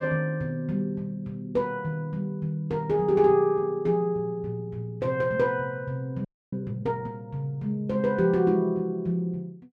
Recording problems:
audio freezing; at 6.5 s

